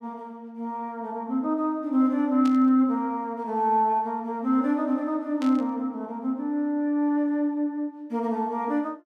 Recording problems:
static burst; at 2.5 s and at 5.5 s; peak -10 dB vs average level

